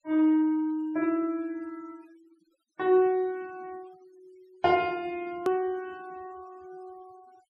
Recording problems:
denoising artefacts; signal-to-artefact ratio 28 dB
edit click; at 5.5 s

